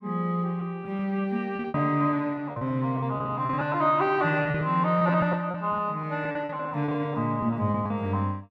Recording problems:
packet loss; 11% of the sound replaced, filled with repeated pitch periods

